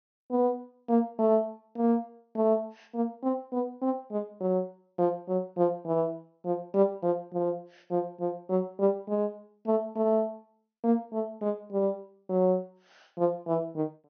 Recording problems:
treble missing; nothing above 6.3 kHz

